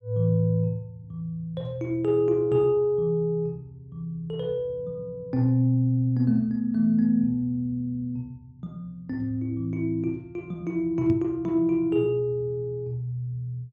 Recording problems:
microphone thump; at 11 s; peak 0 dB vs average level

